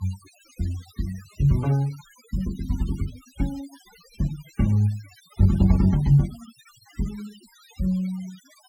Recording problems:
denoising artefacts; signal-to-artefact ratio 22 dB

